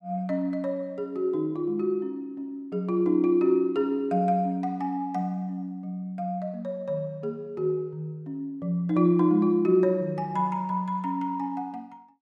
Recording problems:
none

